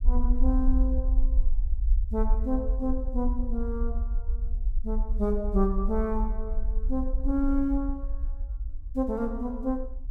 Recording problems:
low-frequency rumble; below 50 Hz, SNR 0 dB

